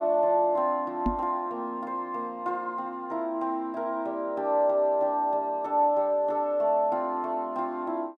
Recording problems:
microphone bump; at 1 s; peak +3 dB vs average level

